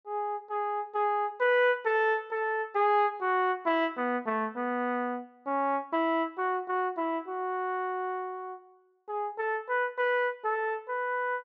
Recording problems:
treble cut off; nothing above 8 kHz

